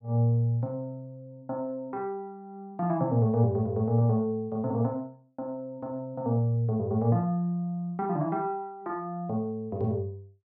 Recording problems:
none

